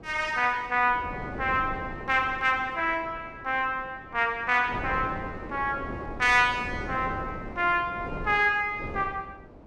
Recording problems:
wind on the microphone; below 530 Hz, SNR 13 dB

